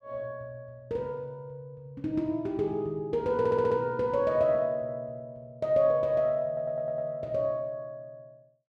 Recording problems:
audio stuttering; at 3.5 s and at 6.5 s

